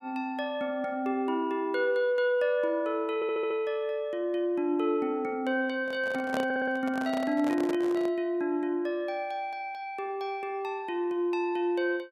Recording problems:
audio stuttering; at 3 s and at 6.5 s
microphone handling noise; from 6 to 8 s; peak -2 dB vs average level

